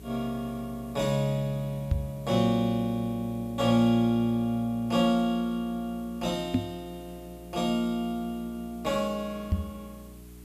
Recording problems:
hum; 60 Hz, harmonics up to 420 Hz, SNR 20 dB
hiss; slope -2 dB per octave, SNR 27 dB
microphone bump; at 2 s, at 6.5 s and at 9.5 s; peak +6 dB vs average level

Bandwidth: 14.5 kHz